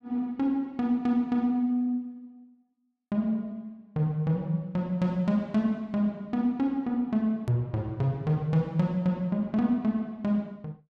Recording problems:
edit click; at 7.5 s

